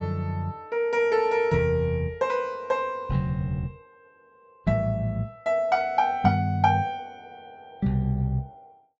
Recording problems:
low-pass filter; nothing above 7.5 kHz

